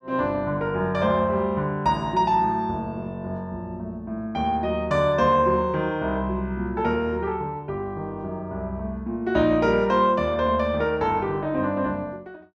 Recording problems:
none

